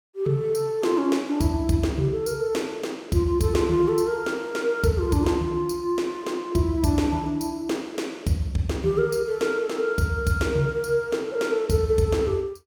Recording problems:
none

